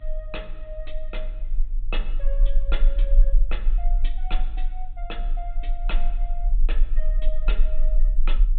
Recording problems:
low-pass filter; nothing above 4 kHz
hum; 50 Hz, harmonics up to 500 Hz, SNR 14 dB
rumble; below 34 Hz, strongest tone 18 Hz, SNR -12 dB

